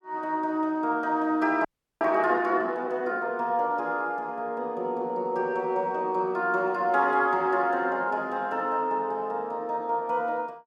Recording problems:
audio freezing; at 1.5 s

